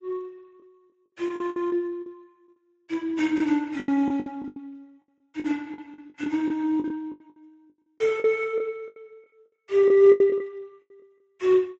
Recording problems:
lossy codec; Speex, then MP3, log-spectral distance 2 dB
lost packets; 14% of the sound replaced, filled with the last packet

